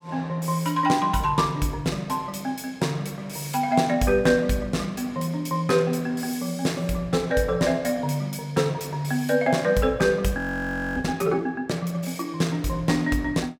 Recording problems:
audio freezing; at 10 s for 0.5 s

